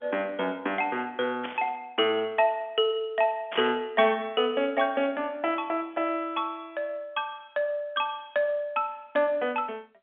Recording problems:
phone line; 150 Hz to 3.4 kHz, G.711
static burst; at 1.5 s and at 3.5 s; peak -3 dB vs average level

